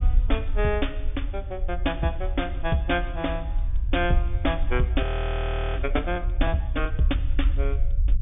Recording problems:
low-pass filter; nothing above 3.6 kHz
rumble; below 60 Hz, SNR 1 dB
audio freezing; at 5 s for 0.5 s

